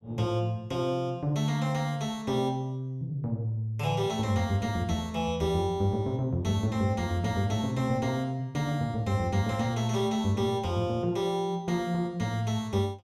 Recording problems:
none

